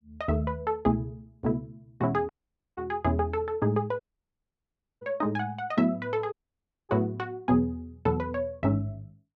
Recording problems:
audio cutting out; at 2.5 s, at 4 s for 1 s and at 6.5 s for 0.5 s

